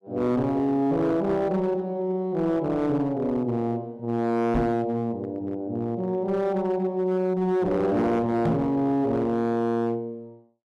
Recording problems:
distortion; hard clipping, uneven, signal-to-distortion ratio 11 dB
microphone bump; at 4.5 s and at 8.5 s; peak +5 dB vs average level

